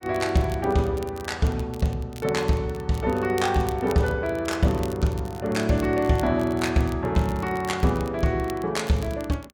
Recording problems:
crackle; vinyl, SNR 21 dB

